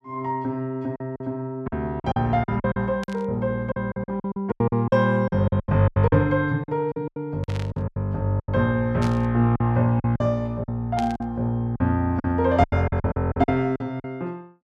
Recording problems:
lost packets; 14% of the sound replaced, filled with silence
static burst; 4 times, first at 3 s; peak -8 dB vs average level

